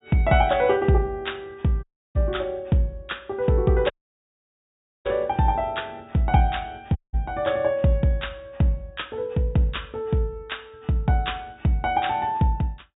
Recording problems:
treble cut off; nothing above 4 kHz
dropout; at 2 s, at 4 s for 1 s and at 7 s

